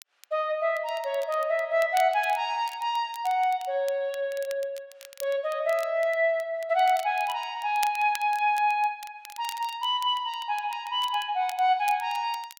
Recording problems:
crackling; vinyl, SNR 19 dB

